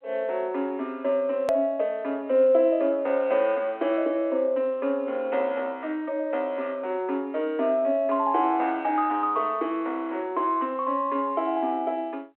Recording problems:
telephone audio; 240 Hz to 3.5 kHz, G.726
edit click; at 1.5 s

